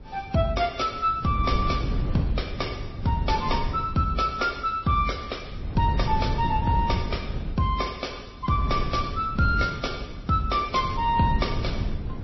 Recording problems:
codec artefacts; MP3, then MP3, log-spectral distance 4 dB, nothing above 5.7 kHz
wind noise; below 160 Hz, SNR 6 dB

